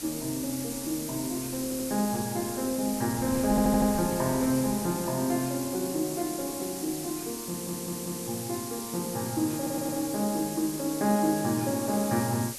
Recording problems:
background hiss; SNR 7 dB
wind on the microphone; below 310 Hz, SNR 17 dB
stutter; 4 times, first at 1.5 s

